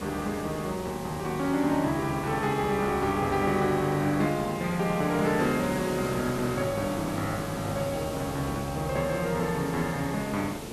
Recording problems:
hiss; SNR 9 dB

